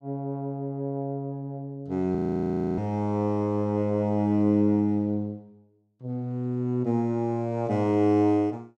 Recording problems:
audio freezing; at 2 s for 0.5 s

